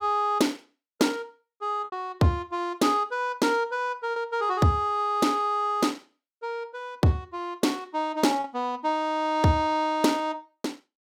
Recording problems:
packet loss; 1.5% of the sound replaced, filled with repeated pitch periods

